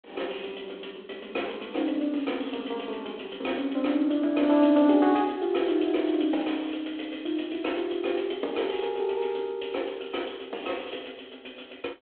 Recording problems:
telephone audio; 260 Hz to 3.4 kHz, G.726

